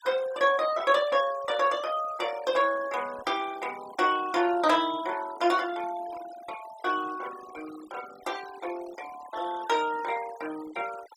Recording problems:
noise reduction artefacts; signal-to-artefact ratio 17 dB

